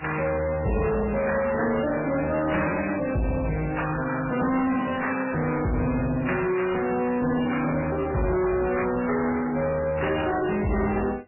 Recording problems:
codec artefacts; MP3, then AAC, log-spectral distance 6 dB, nothing above 2.8 kHz
distortion; soft clipping, signal-to-distortion ratio 8 dB

